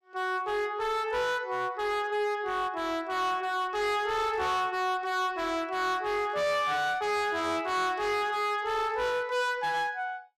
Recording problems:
distorted audio; hard clipping, signal-to-distortion ratio 7 dB

